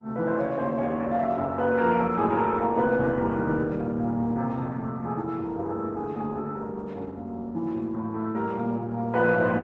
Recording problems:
codec artefacts; Opus, log-spectral distance 2 dB

